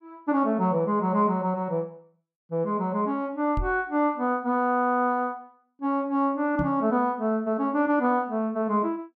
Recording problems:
knock on the microphone; at 3.5 s and at 6.5 s; peak -2 dB vs average level

